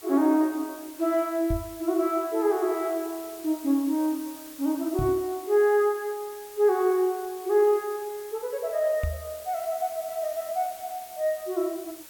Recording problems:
background hiss; slope 0 dB per octave, SNR 17 dB
knock on the microphone; at 1.5 s, at 5 s and at 9 s; peak +1 dB vs average level

